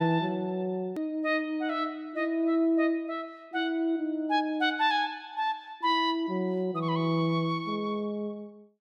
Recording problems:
click at an edit; at 1 s

